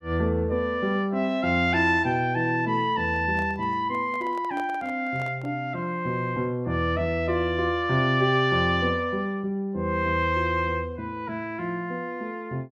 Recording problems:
handling noise; from 3 to 5.5 s; peak -10 dB vs average level

